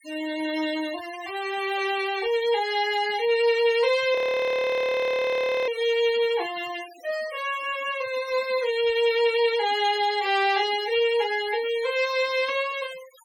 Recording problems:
denoising artefacts; signal-to-artefact ratio 17 dB
frozen audio; at 4 s for 1.5 s

